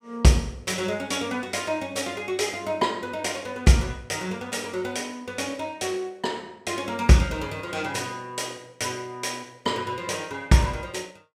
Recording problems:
none

